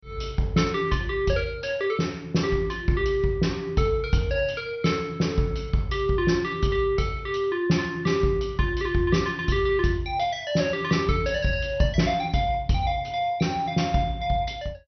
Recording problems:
codec artefacts; MP2, log-spectral distance 3 dB, nothing above 6 kHz

